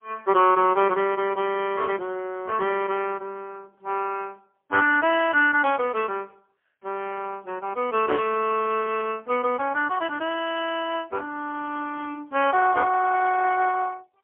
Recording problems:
telephone audio; 220 Hz to 3.2 kHz, AMR-NB, then MP3

